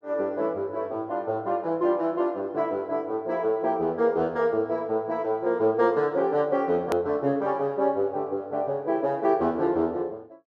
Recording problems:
hard cut with a click; at 7 s

